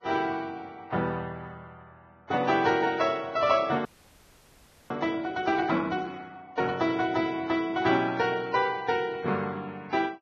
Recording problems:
lossy compression; Vorbis, log-spectral distance 3 dB, nothing above 6.2 kHz
audio freezing; at 4 s for 1 s

